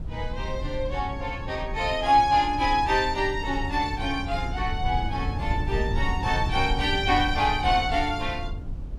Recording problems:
wind noise; below 100 Hz, SNR 7 dB

